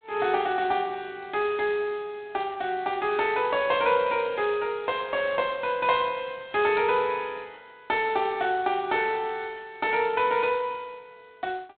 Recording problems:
telephone audio; 130 Hz to 3.7 kHz, G.726

